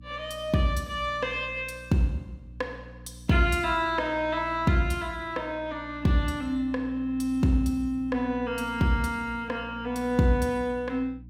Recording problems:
electrical hum; 60 Hz, harmonics up to 300 Hz, SNR 18 dB

